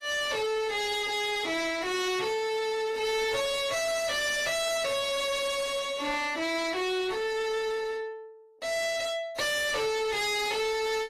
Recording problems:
codec artefacts; AAC, log-spectral distance 4 dB, nothing above 13.1 kHz
distortion; soft clipping, signal-to-distortion ratio 5 dB

